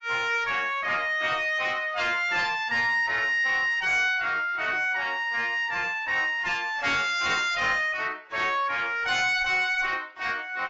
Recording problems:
codec artefacts; AAC, log-spectral distance 2 dB
distorted audio; soft clipping, signal-to-distortion ratio 10 dB

